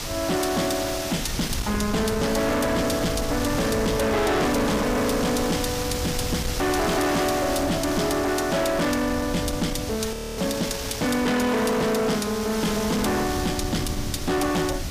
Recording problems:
distortion; hard clipping, uneven, signal-to-distortion ratio 7 dB
background hiss; slope -1 dB per octave, SNR 8 dB
wind on the microphone; below 200 Hz, SNR 10 dB
frozen audio; at 10 s

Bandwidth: 15 kHz